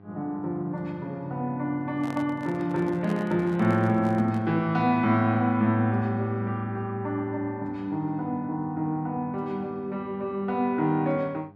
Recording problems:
mains hum; 50 Hz, harmonics up to 1.6 kHz, SNR 25 dB
handling noise; from 2 to 4.5 s; peak -9 dB vs average level

